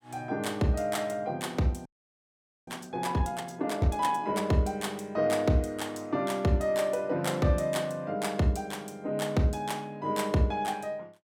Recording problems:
audio freezing; at 2 s for 1 s

